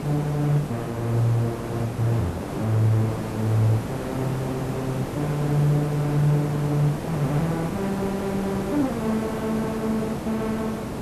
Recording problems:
background hiss; slope -8 dB per octave, SNR 6 dB

